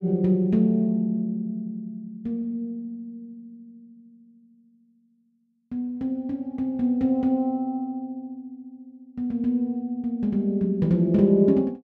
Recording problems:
none

